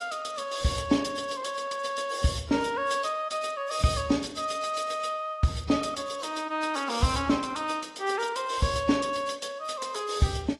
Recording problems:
lossy codec; AAC, log-spectral distance 4 dB, nothing above 11 kHz

